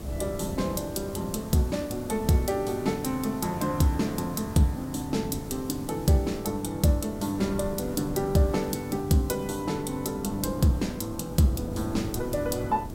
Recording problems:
background hiss; slope -3 dB per octave, SNR 21 dB
wind noise; below 300 Hz, SNR 12 dB

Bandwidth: 16 kHz